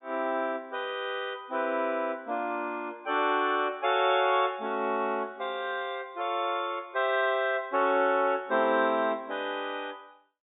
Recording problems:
low-pass filter; nothing above 4 kHz

